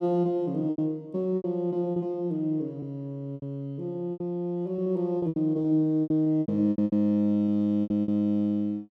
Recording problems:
lost packets; 12% of the sound replaced, filled with repeated pitch periods

